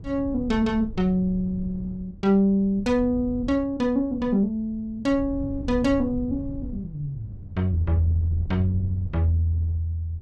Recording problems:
wind on the microphone; below 120 Hz, SNR 13 dB

